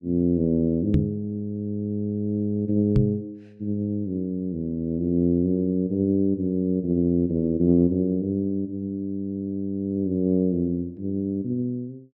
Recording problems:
knock on the microphone; at 1 s and at 3 s; peak +7 dB vs average level

